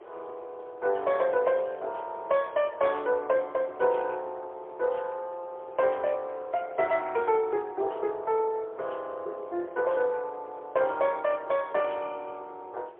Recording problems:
phone line; 320 Hz to 3.6 kHz, AMR-NB, then MP3
wind on the microphone; below 720 Hz, SNR 22 dB

